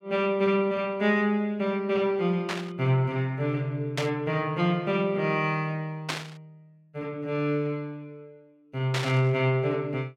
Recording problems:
burst of static; 4 times, first at 2.5 s; peak +1 dB vs average level

